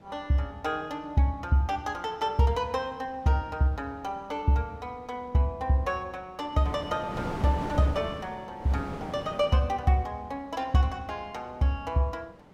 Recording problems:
wind on the microphone; below 750 Hz, SNR 10 dB

